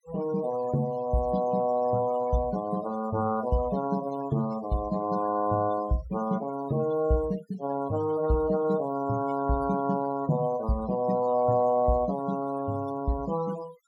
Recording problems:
denoising artefacts; signal-to-artefact ratio 17 dB

